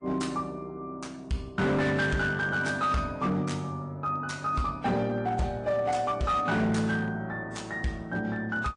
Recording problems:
lossy codec; MP3, then AAC, log-spectral distance 2 dB, nothing above 9.8 kHz
distorted audio; hard clipping, signal-to-distortion ratio 11 dB

